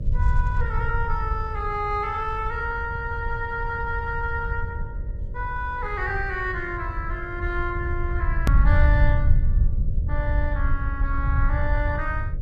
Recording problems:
lossy codec; Opus, log-spectral distance 2 dB, nothing above 14.1 kHz
hum; 50 Hz, harmonics up to 600 Hz, SNR 19 dB
rumble; below 80 Hz, SNR -2 dB
click at an edit; at 8.5 s

